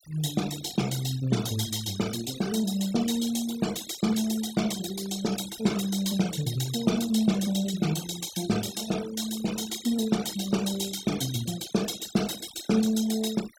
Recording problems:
noise reduction artefacts; signal-to-artefact ratio 12 dB

